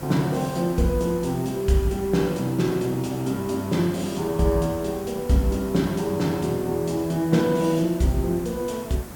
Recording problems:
hiss; slope -5 dB per octave, SNR 15 dB

